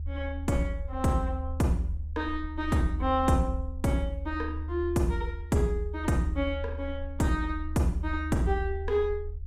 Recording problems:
rumble; below 76 Hz, strongest tone 76 Hz, SNR 7 dB

